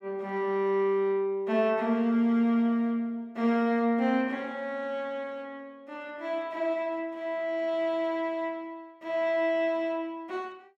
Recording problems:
none

